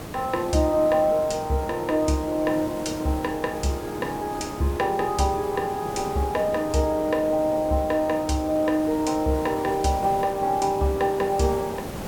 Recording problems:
background hiss; slope -7 dB per octave, SNR 12 dB

